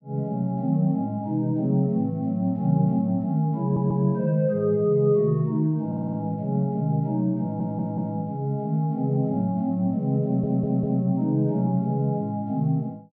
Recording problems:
stutter; 4 times, first at 3.5 s

